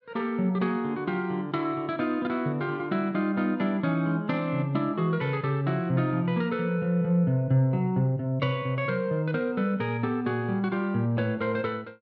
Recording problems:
none

